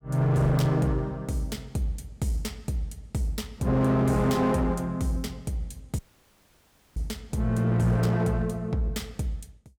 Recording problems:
distorted audio; hard clipping, uneven, signal-to-distortion ratio 10 dB
dropout; at 6 s for 1 s

